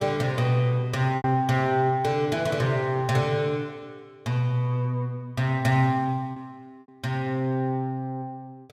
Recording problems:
packet loss; 1.4% of the sound replaced, filled with repeated pitch periods

